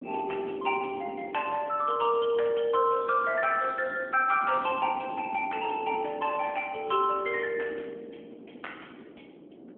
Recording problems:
telephone audio; 190 Hz to 3.3 kHz, AMR-NB
wind on the microphone; below 420 Hz, SNR 17 dB

